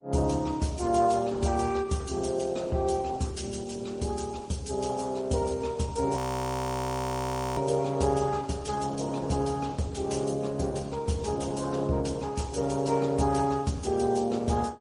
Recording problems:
codec artefacts; Opus, then MP3, log-spectral distance 5 dB, nothing above 20.1 kHz
audio freezing; at 6 s for 1.5 s

